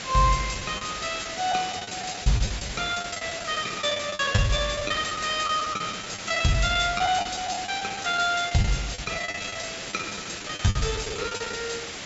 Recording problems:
treble missing; nothing above 8 kHz
background hiss; SNR 7 dB
packet loss; 14% of the sound replaced, filled with the last packet

